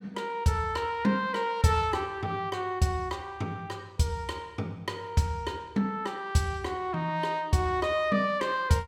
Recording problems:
none

